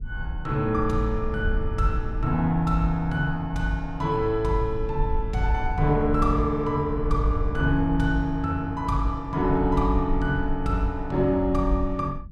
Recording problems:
rumble; below 64 Hz, SNR 8 dB

